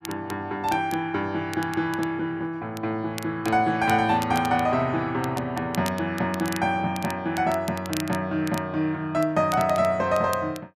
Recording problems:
crackling; vinyl, SNR 16 dB

